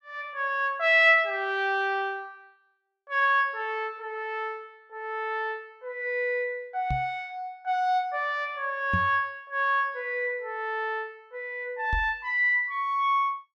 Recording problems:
microphone bump; at 7 s, at 9 s and at 12 s; peak 0 dB vs average level

